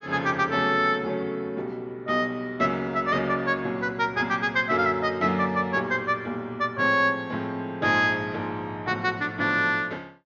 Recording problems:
treble missing; nothing above 6.9 kHz

